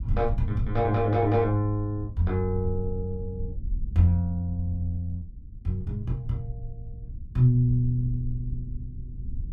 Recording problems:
low-frequency rumble; below 66 Hz, SNR 11 dB

